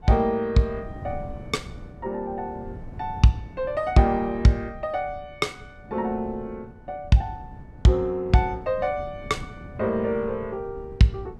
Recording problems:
wind on the microphone; below 210 Hz, SNR 17 dB

